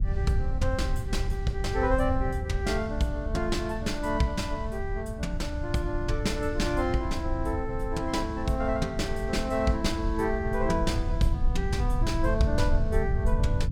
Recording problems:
rumble; below 84 Hz, SNR 3 dB

